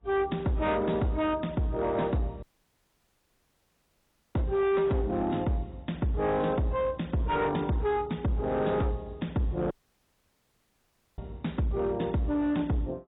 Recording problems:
codec artefacts; AAC, log-spectral distance 2 dB, nothing above 3.8 kHz
distorted audio; hard clipping, signal-to-distortion ratio 11 dB
audio cutting out; at 2.5 s for 2 s and at 9.5 s for 1.5 s

